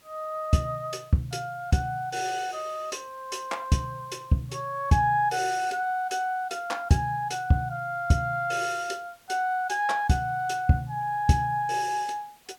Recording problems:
hiss; slope -1 dB per octave, SNR 29 dB

